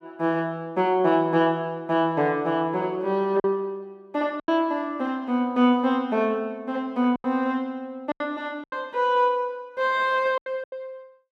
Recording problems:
lost packets; 5% of the sound replaced, filled with silence

